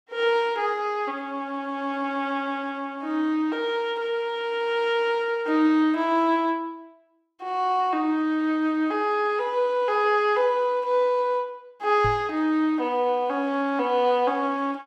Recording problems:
microphone bump; at 12 s; peak -3 dB vs average level

